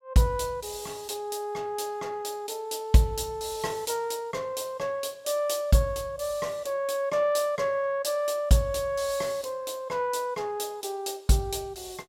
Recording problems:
none

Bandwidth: 16.5 kHz